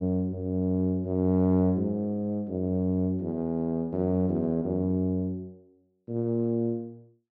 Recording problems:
none

